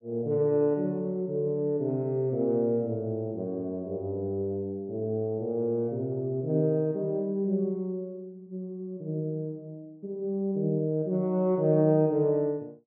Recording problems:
treble cut off; nothing above 3.4 kHz

